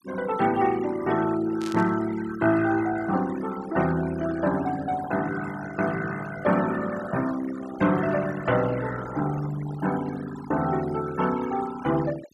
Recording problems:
denoising artefacts; signal-to-artefact ratio 14 dB
burst of static; at 1.5 s; peak -9 dB vs average level

